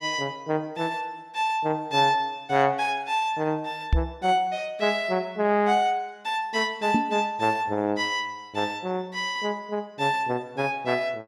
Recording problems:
microphone thump; at 4 s and at 7 s; peak +7 dB vs average level

